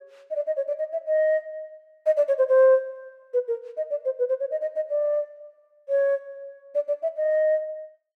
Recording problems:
none

